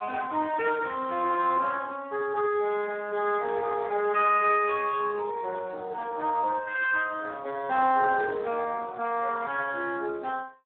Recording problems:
telephone audio; 220 Hz to 3.6 kHz, Speex
static burst; at 4.5 s; peak -23 dB vs average level

